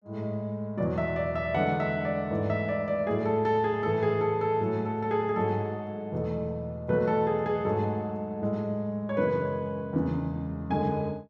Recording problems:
none

